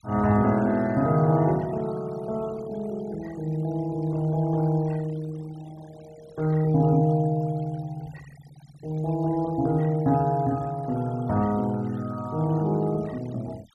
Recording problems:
noise reduction artefacts; signal-to-artefact ratio 24 dB

